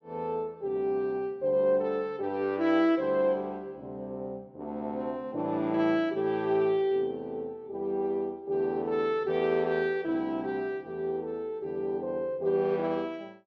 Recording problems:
none

